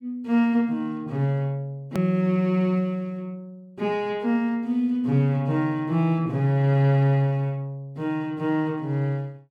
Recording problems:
hard cut with a click; at 2 s

